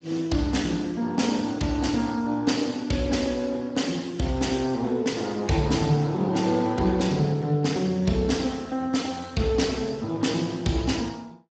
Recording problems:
codec artefacts; Speex, log-spectral distance 4 dB, nothing above 7.6 kHz

